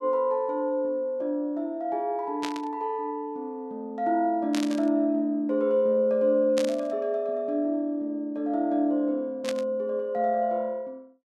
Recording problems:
static burst; 4 times, first at 2.5 s; peak -2 dB vs average level

